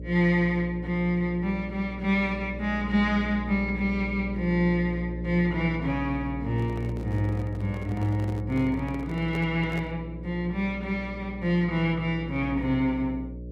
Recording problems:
mains hum; 60 Hz, harmonics up to 600 Hz, SNR 10 dB
handling noise; from 6.5 to 10 s; peak -6 dB vs average level

